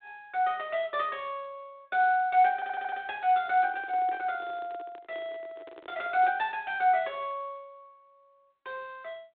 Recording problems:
telephone audio; 260 Hz to 3.7 kHz, G.726
audio stuttering; at 2.5 s
microphone handling noise; from 3.5 to 6.5 s; peak -14 dB vs average level

